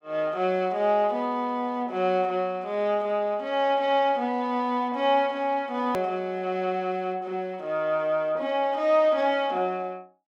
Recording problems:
hard cut with a click; at 6 s

